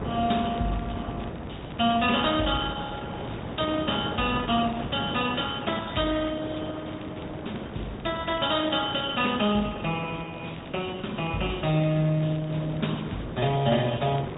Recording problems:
treble missing; nothing above 3.1 kHz
lossy codec; Opus, log-spectral distance 5 dB
wind on the microphone; below 640 Hz, SNR 9 dB
crackling; vinyl, SNR 26 dB

